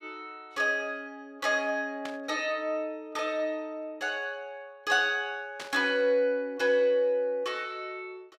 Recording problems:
static burst; at 2 s and at 5.5 s; peak -6 dB vs average level

